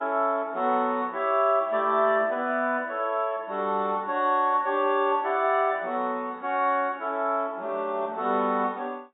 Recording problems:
lossy codec; AAC, log-spectral distance 2 dB, nothing above 3.7 kHz

